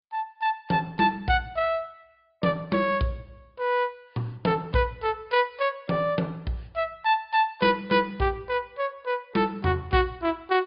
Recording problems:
low-pass filter; nothing above 4.9 kHz
lossy compression; Opus, log-spectral distance 2 dB

